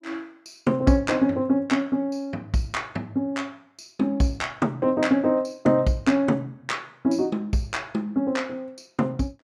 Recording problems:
none

